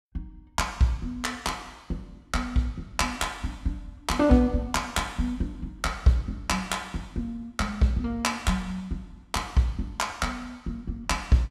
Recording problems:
none

